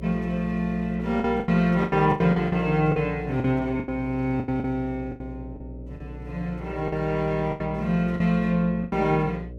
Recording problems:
mains hum; 60 Hz, harmonics up to 600 Hz, SNR 14 dB
lost packets; 11% of the sound replaced, filled with the last packet

